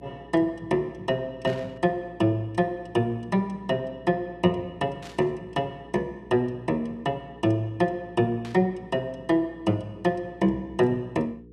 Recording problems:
electrical hum; 60 Hz, harmonics up to 480 Hz, SNR 22 dB
static burst; at 1.5 s, at 5 s and at 8.5 s; peak -11 dB vs average level

